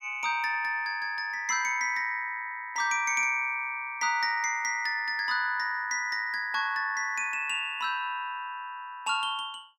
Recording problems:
none

